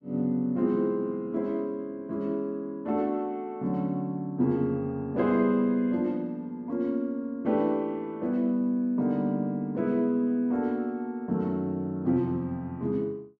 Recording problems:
none

